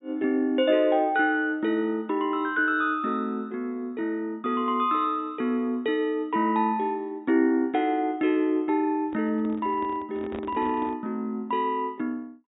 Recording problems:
treble missing; nothing above 4 kHz
microphone handling noise; from 9 to 11 s; peak -7 dB vs average level

